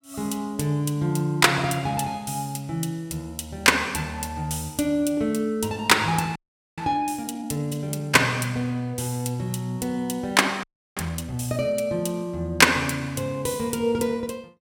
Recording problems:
audio freezing; at 6.5 s and at 11 s

